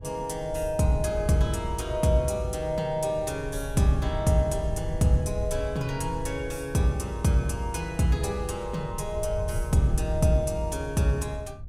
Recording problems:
wind noise; below 90 Hz, SNR 11 dB

